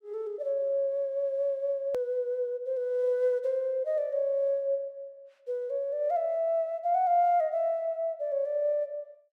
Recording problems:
edit click; at 2 s

